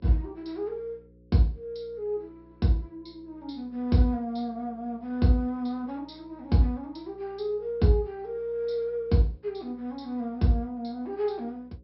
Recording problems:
low-pass filter; nothing above 5.3 kHz
mains hum; 60 Hz, harmonics up to 540 Hz, SNR 27 dB

